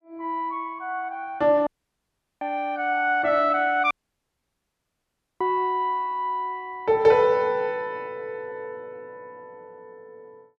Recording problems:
dropout; at 1.5 s for 0.5 s and at 4 s for 1.5 s

